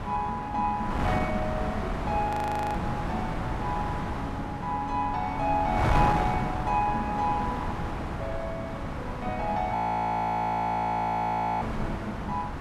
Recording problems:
wind on the microphone; below 920 Hz, SNR 3 dB
frozen audio; at 2.5 s and at 10 s for 2 s

